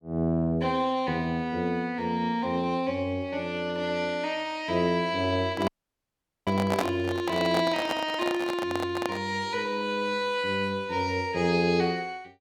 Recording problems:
microphone handling noise; from 5.5 to 9 s; peak +3 dB vs average level
audio cutting out; at 5.5 s for 1 s

